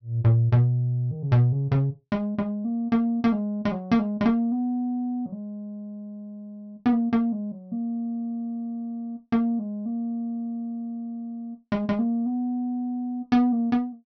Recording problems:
treble cut off; nothing above 6.1 kHz

